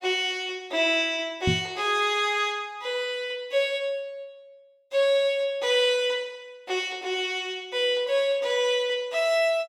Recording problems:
microphone bump; at 1.5 s; peak +4 dB vs average level

